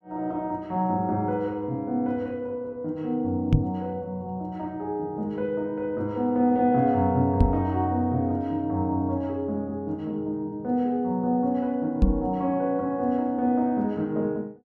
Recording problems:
knock on the microphone; at 3.5 s, at 7.5 s and at 12 s; peak +9 dB vs average level

